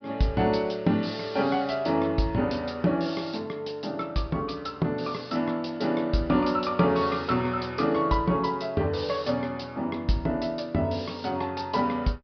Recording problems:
low-pass filter; nothing above 5.5 kHz

